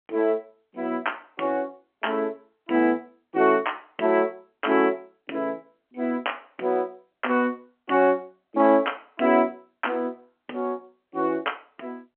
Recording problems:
phone line; 220 Hz to 3.2 kHz, G.711

